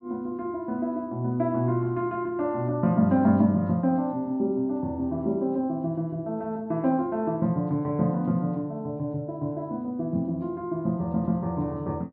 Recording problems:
treble missing; nothing above 5.2 kHz

